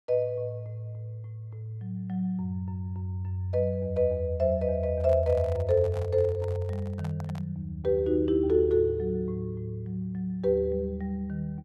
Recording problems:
microphone handling noise; from 5 to 7.5 s; peak -10 dB vs average level

